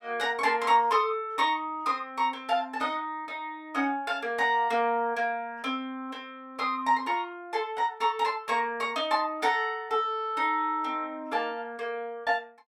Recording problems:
none

